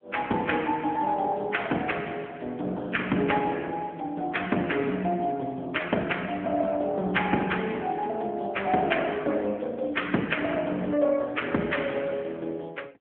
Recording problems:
telephone audio; 150 Hz to 3.3 kHz, AMR-NB

